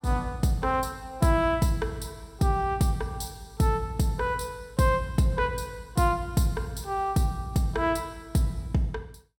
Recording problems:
none

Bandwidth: 17 kHz